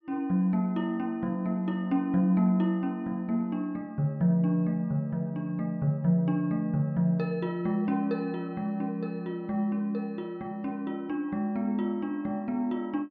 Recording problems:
treble missing; nothing above 8 kHz

